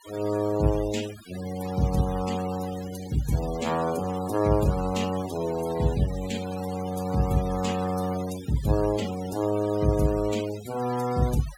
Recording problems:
denoising artefacts; signal-to-artefact ratio 15 dB

